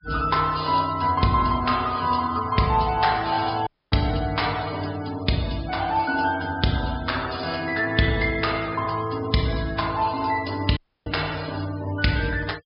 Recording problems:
low-pass filter; nothing above 5.3 kHz
noise reduction artefacts; signal-to-artefact ratio 17 dB
audio cutting out; at 3.5 s and at 11 s

